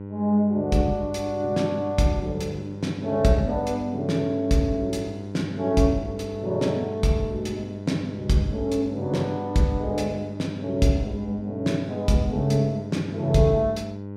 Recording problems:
hum; 50 Hz, harmonics up to 1 kHz, SNR 11 dB

